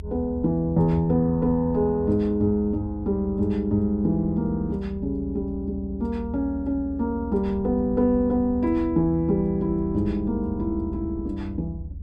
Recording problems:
rumble; below 80 Hz, strongest tone 76 Hz, SNR 11 dB

